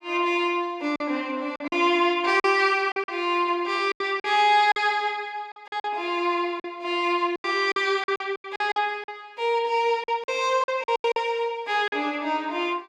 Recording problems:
lost packets; 10% of the sound replaced, filled with silence

